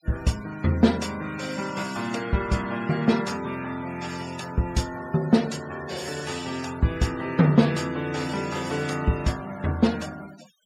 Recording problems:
denoising artefacts; signal-to-artefact ratio 18 dB

